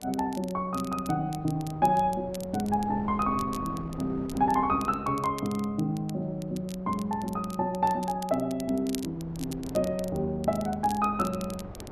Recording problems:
wind noise; below 510 Hz, SNR 17 dB
crackling; vinyl, SNR 18 dB

